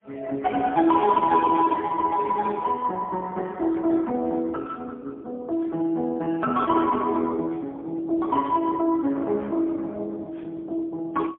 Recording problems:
phone line; 220 Hz to 2.5 kHz, AMR-NB, then MP3

